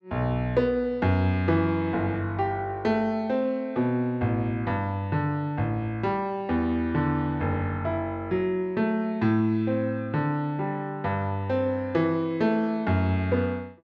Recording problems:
none

